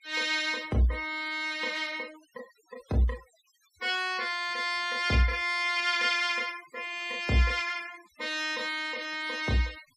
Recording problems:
denoising artefacts; signal-to-artefact ratio 22 dB

